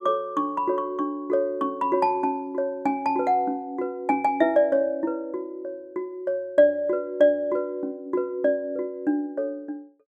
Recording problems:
none

